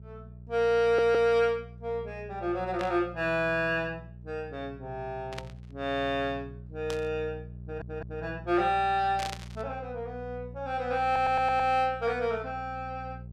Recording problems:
hum; 60 Hz, harmonics up to 420 Hz, SNR 16 dB
audio stuttering; at 1 s, at 7.5 s and at 11 s
burst of static; 4 times, first at 3 s; peak -4 dB vs average level

